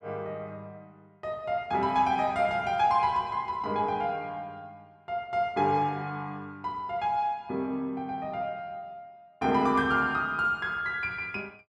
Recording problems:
none

